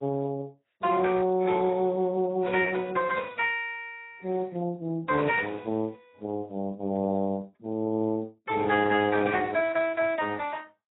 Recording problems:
lossy codec; Speex, then AAC, log-spectral distance 4 dB, nothing above 3.8 kHz

